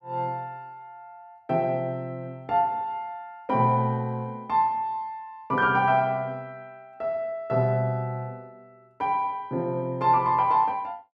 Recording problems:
none

